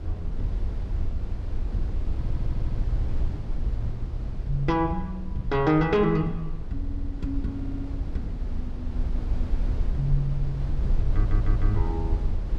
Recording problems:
rumble; below 64 Hz, SNR 2 dB
audio stuttering; 4 times, first at 2 s

